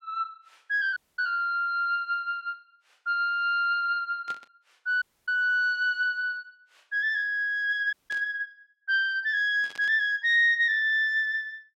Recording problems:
dropout; at 1 s, at 5 s and at 8 s
burst of static; at 4.5 s, at 8 s and at 9.5 s; peak -14 dB vs average level

